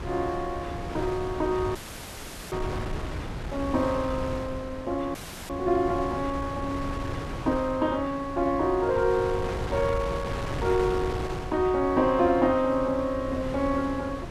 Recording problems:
wind noise; below 610 Hz, SNR 8 dB
dropout; at 2 s for 1 s and at 5 s

